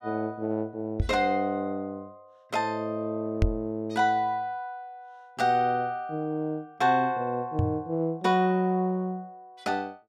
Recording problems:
microphone thump; at 1 s, at 3.5 s and at 7.5 s; peak +7 dB vs average level

